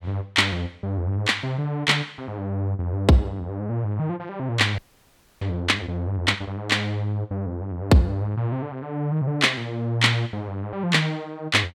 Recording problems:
audio freezing; at 5 s for 0.5 s

